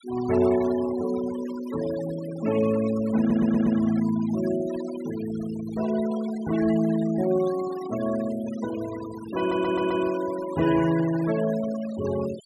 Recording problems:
denoising artefacts; signal-to-artefact ratio 15 dB
audio stuttering; at 3 s and at 9.5 s

